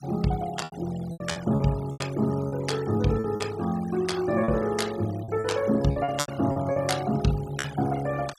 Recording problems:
denoising artefacts; signal-to-artefact ratio 17 dB
packet loss; 10% of the sound replaced, filled with repeated pitch periods

